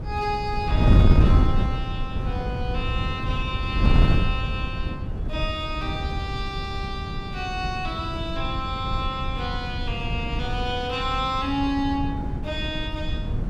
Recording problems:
wind noise; below 140 Hz, SNR -3 dB

